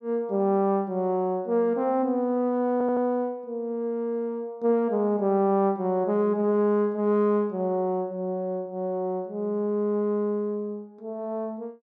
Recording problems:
stutter; at 2.5 s

